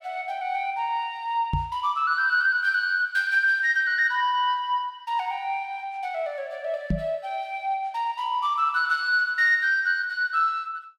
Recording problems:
microphone thump; at 1.5 s and at 7 s; peak +2 dB vs average level

